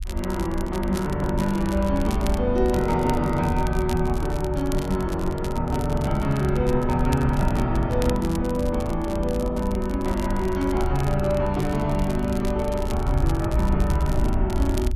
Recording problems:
rumble; below 72 Hz, SNR 5 dB
crackling; vinyl, SNR 17 dB

